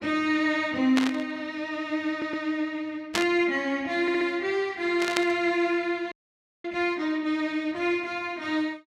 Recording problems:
burst of static; at 1 s, at 3 s and at 5 s; peak +4 dB vs average level
stutter; at 2 s and at 4 s
frozen audio; at 6 s for 0.5 s

